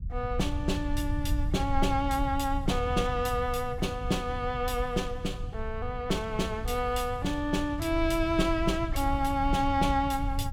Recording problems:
rumble; below 86 Hz, SNR 6 dB

